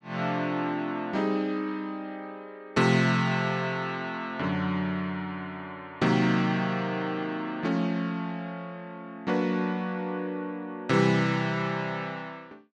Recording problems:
none

